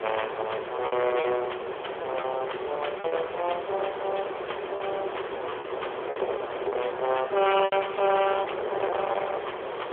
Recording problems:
telephone audio; 320 Hz to 3.3 kHz, AMR-NB
distortion; hard clipping, uneven, signal-to-distortion ratio 8 dB
background hiss; SNR 6 dB
wind noise; below 880 Hz, SNR 9 dB
packet loss; 8% of the sound replaced, filled with repeated pitch periods

